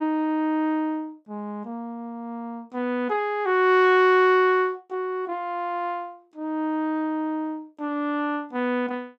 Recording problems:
none

